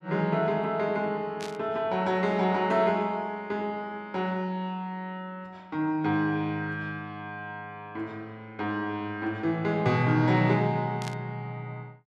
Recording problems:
static burst; at 1.5 s and at 11 s; peak -7 dB vs average level

